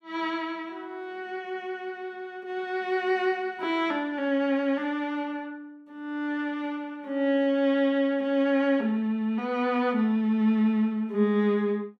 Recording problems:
none

